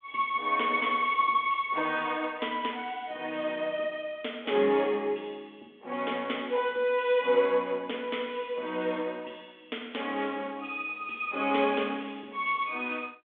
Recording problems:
telephone audio; 280 Hz to 3.5 kHz, G.726

